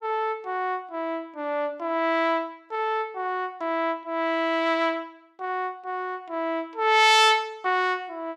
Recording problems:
none

